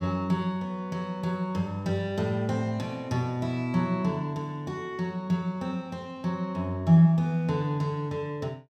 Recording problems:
none

